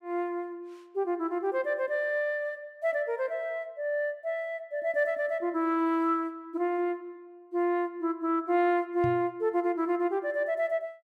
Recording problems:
microphone bump; at 9 s; peak -2 dB vs average level

